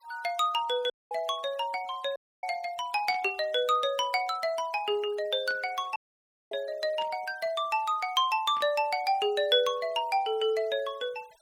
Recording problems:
denoising artefacts; signal-to-artefact ratio 26 dB
audio cutting out; at 1 s, at 2 s and at 6 s for 0.5 s
burst of static; 4 times, first at 3 s; peak -15 dB vs average level

